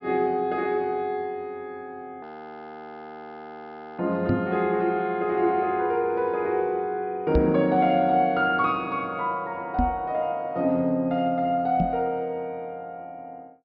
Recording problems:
low-pass filter; nothing above 5.5 kHz
audio freezing; at 2 s for 2 s
knock on the microphone; 4 times, first at 4.5 s; peak +3 dB vs average level

